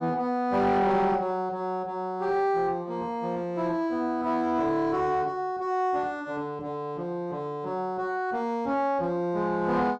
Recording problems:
distortion; soft clipping, signal-to-distortion ratio 11 dB

